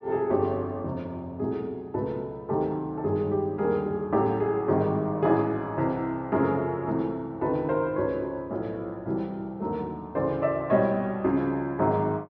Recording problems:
treble missing; nothing above 5.8 kHz

